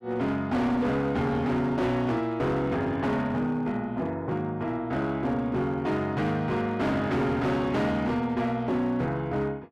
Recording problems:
distortion; hard clipping, signal-to-distortion ratio 10 dB

